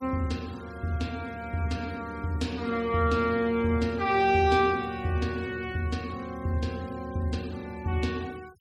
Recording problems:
denoising artefacts; signal-to-artefact ratio 24 dB

